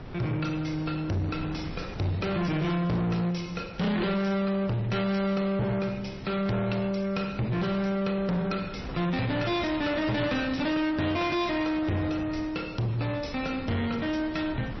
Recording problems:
lossy compression; MP3, log-spectral distance 4 dB, nothing above 5.8 kHz
distortion; soft clipping, signal-to-distortion ratio 7 dB
wind noise; below 620 Hz, SNR 14 dB

